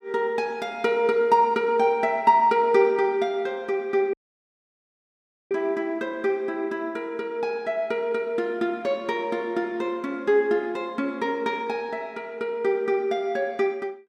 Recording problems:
audio cutting out; at 4 s for 1.5 s

